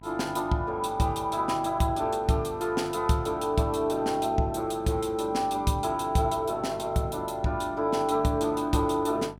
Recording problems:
hum; 50 Hz, harmonics up to 1.4 kHz, SNR 22 dB

